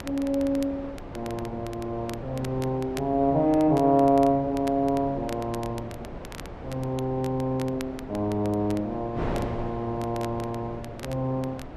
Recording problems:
wind noise; below 650 Hz, SNR 12 dB
crackling; vinyl, SNR 20 dB

